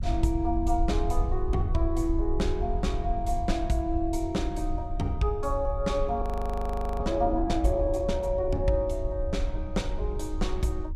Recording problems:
rumble; below 64 Hz, SNR 4 dB
audio freezing; at 6 s for 1 s

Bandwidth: 14.5 kHz